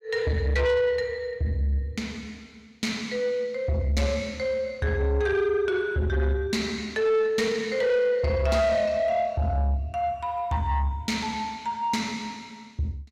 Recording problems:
distorted audio; soft clipping, signal-to-distortion ratio 11 dB

